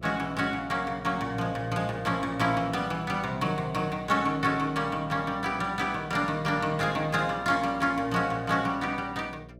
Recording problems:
hum; 60 Hz, harmonics up to 660 Hz, SNR 19 dB

